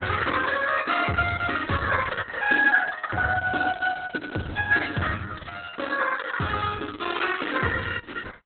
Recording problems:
codec artefacts; Opus, log-spectral distance 7 dB, nothing above 4 kHz

